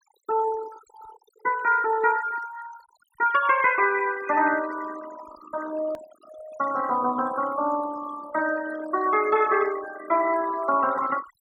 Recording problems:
denoising artefacts; signal-to-artefact ratio 15 dB
edit click; at 6 s

